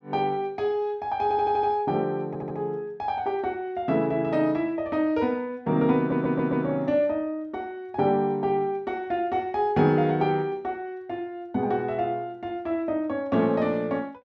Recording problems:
stutter; at 1 s, at 2.5 s and at 6 s

